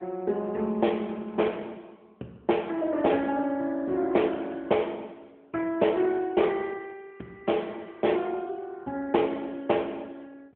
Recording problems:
telephone audio; 190 Hz to 3.4 kHz, AMR-NB

